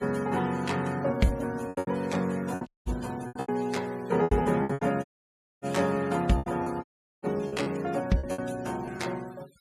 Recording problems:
denoising artefacts; signal-to-artefact ratio 21 dB
packet loss; 12% of the sound replaced, filled with repeated pitch periods
dropout; at 2.5 s, at 5 s for 0.5 s and at 7 s

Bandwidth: 14.5 kHz